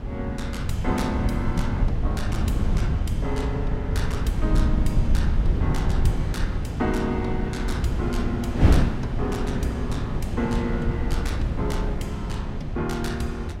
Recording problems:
low-frequency rumble; below 100 Hz, SNR -1 dB
wind noise; below 210 Hz, SNR -1 dB

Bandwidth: 16 kHz